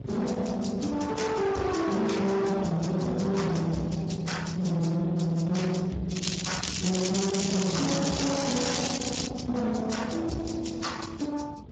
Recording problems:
lossy compression; Vorbis, then Speex, log-spectral distance 7 dB, nothing above 7.3 kHz
distorted audio; soft clipping, signal-to-distortion ratio 6 dB
rumble; below 860 Hz, SNR 9 dB
crackle; from 6 to 9.5 s; loose cable, SNR 5 dB

